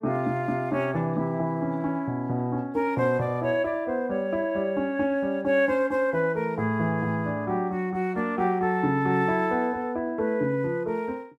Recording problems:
none

